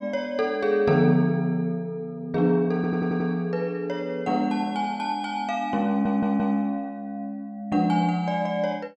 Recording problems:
audio stuttering; at 3 s and at 6 s

